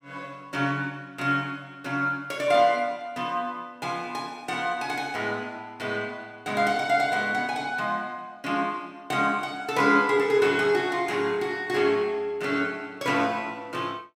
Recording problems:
none

